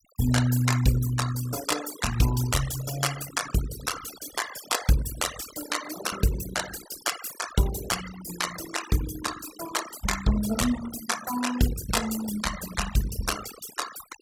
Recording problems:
noise reduction artefacts; signal-to-artefact ratio 9 dB

